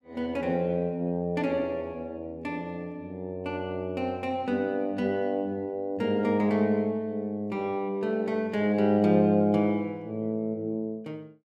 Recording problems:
none

